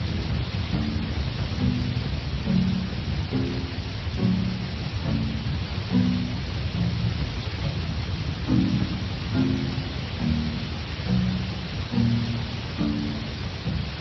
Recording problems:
lossy codec; MP3, then Speex, log-spectral distance 12 dB, nothing above 16.5 kHz
hum; 60 Hz, harmonics up to 360 Hz, SNR 19 dB
background hiss; slope -2 dB per octave, SNR 6 dB
wind noise; below 170 Hz, SNR 3 dB

